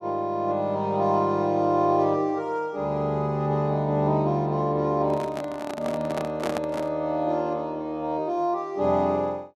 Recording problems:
handling noise; from 5 to 7 s; peak -1 dB vs average level

